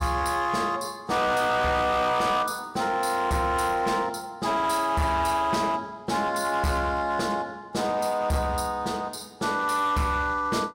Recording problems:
distorted audio; hard clipping, uneven, signal-to-distortion ratio 10 dB

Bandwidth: 16 kHz